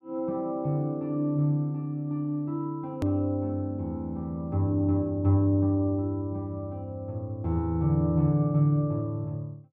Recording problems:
click at an edit; at 3 s

